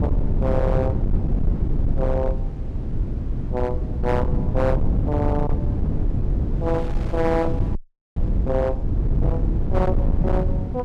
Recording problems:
distorted audio; hard clipping, signal-to-distortion ratio 11 dB
rumble; below 130 Hz, SNR -2 dB
wind noise; below 760 Hz, SNR 20 dB
audio freezing; at 8 s

